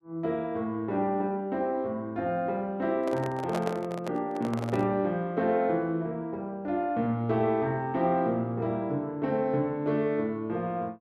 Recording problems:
handling noise; from 3 to 5 s; peak 0 dB vs average level

